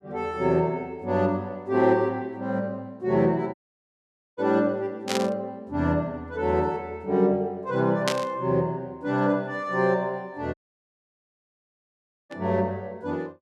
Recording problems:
dropout; at 3.5 s for 1 s and at 11 s for 2 s
burst of static; at 5 s, at 8 s and at 12 s; peak +3 dB vs average level

